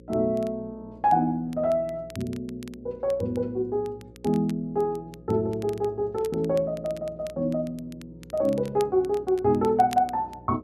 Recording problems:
electrical hum; 60 Hz, harmonics up to 540 Hz, SNR 22 dB
crackle; vinyl, SNR 24 dB

